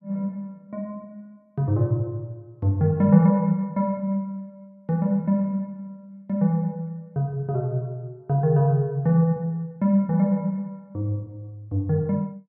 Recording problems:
none

